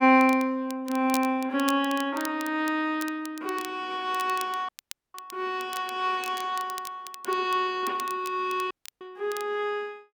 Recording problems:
crackle; vinyl, SNR 15 dB
audio cutting out; at 4.5 s and at 8.5 s

